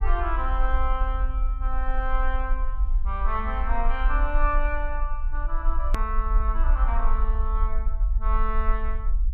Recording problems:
rumble; below 44 Hz, SNR -4 dB
edit click; at 6 s

